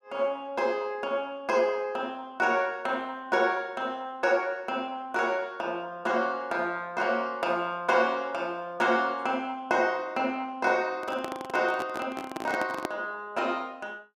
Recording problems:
microphone handling noise; from 11 to 13 s; peak +1 dB vs average level

